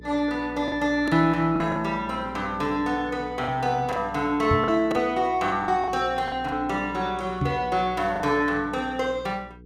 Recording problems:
electrical hum; 60 Hz, harmonics up to 480 Hz, SNR 19 dB
packet loss; 6% of the sound replaced, filled with the last packet
microphone thump; at 4.5 s and at 7.5 s; peak +2 dB vs average level

